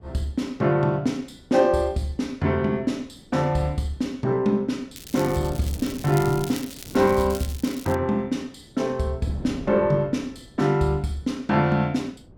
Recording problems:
wind on the microphone; below 320 Hz, SNR 19 dB
crackling; from 5 to 8 s; loose cable, SNR 15 dB

